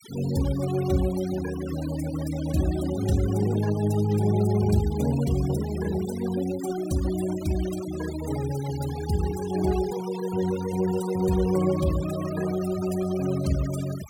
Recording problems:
noise reduction artefacts; signal-to-artefact ratio 15 dB

